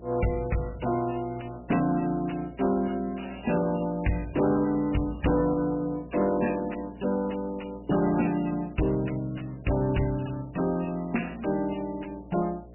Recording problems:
lossy codec; MP3, log-spectral distance 8 dB, nothing above 2.9 kHz
distortion; soft clipping, signal-to-distortion ratio 9 dB
hum; 60 Hz, harmonics up to 720 Hz, SNR 20 dB

